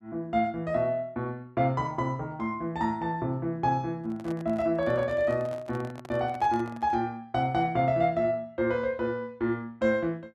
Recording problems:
handling noise; from 4 to 7 s; peak -11 dB vs average level

